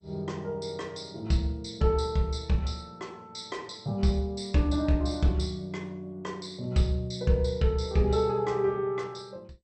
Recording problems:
lossy compression; MP2, log-spectral distance 3 dB, nothing above 8.5 kHz

